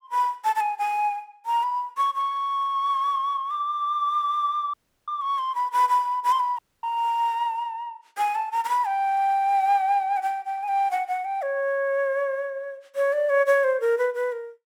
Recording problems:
audio cutting out; at 4.5 s and at 6.5 s

